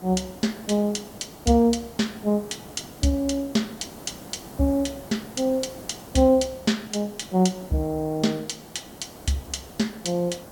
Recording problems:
background hiss; SNR 17 dB

